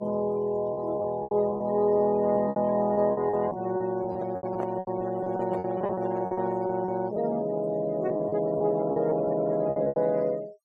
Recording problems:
denoising artefacts; signal-to-artefact ratio 22 dB
lost packets; 12% of the sound replaced, filled with repeated pitch periods
handling noise; from 4 to 6.5 s; peak -5 dB vs average level

